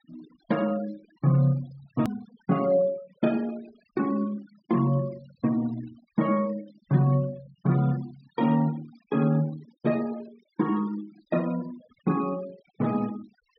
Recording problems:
low-pass filter; nothing above 5.5 kHz
denoising artefacts; signal-to-artefact ratio 22 dB
edit click; at 2 s

